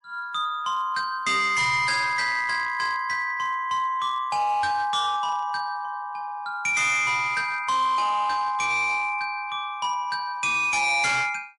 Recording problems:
lossy compression; MP3, log-spectral distance 2 dB, nothing above 11 kHz
distortion; hard clipping, signal-to-distortion ratio 10 dB

